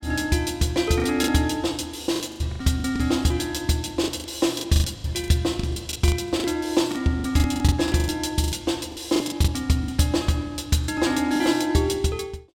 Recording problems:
packet loss; 13% of the sound replaced, filled with the last packet

